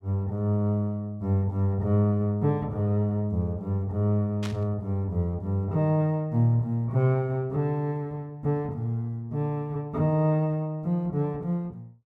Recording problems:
burst of static; at 4.5 s; peak -7 dB vs average level

